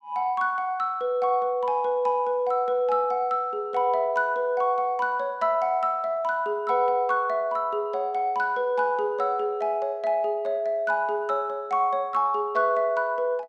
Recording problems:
none

